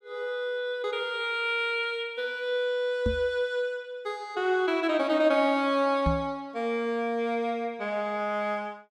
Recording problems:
microphone thump; at 3 s and at 6 s; peak +3 dB vs average level

